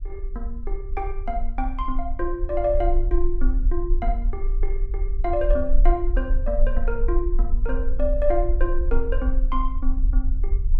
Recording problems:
rumble; below 40 Hz, strongest tone 18 Hz, SNR -2 dB

